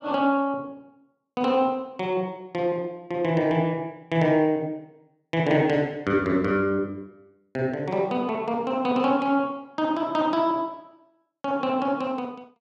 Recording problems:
none

